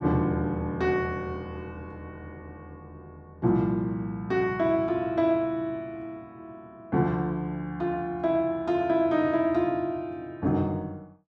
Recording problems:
none

